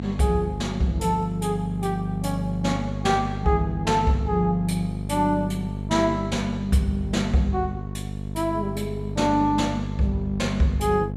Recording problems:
hum; 50 Hz, harmonics up to 700 Hz, SNR 6 dB

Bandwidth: 14.5 kHz